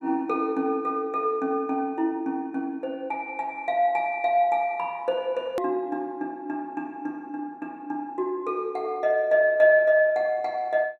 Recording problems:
hard cut with a click; at 5.5 s

